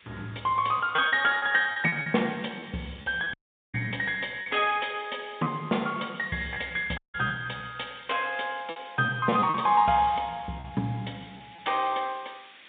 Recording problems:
telephone audio; 110 Hz to 3.7 kHz, G.711
background hiss; SNR 26 dB
packet loss; 7% of the sound replaced, filled with repeated pitch periods
audio cutting out; at 3.5 s and at 7 s

